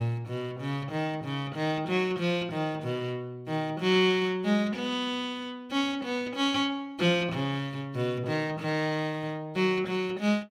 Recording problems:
none

